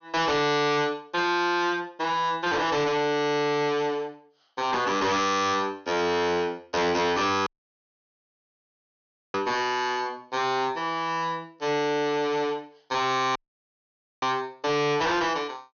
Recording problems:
treble missing; nothing above 6.5 kHz
distorted audio; hard clipping, signal-to-distortion ratio 7 dB
dropout; at 7.5 s for 2 s and at 13 s for 1 s

